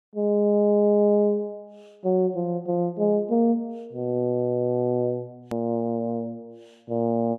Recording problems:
hard cut with a click; at 5.5 s

